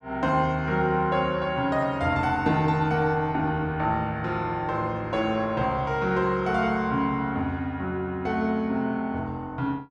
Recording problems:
none

